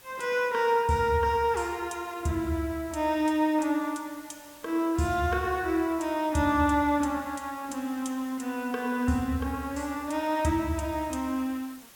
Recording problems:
hiss; slope -1 dB per octave, SNR 22 dB

